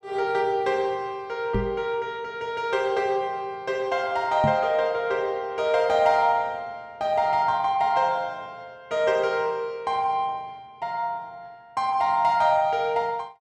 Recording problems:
microphone thump; at 1.5 s and at 4.5 s; peak +1 dB vs average level

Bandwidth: 12.5 kHz